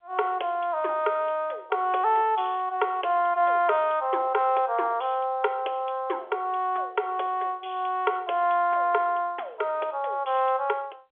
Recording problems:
phone line; 370 Hz to 3.5 kHz, G.711

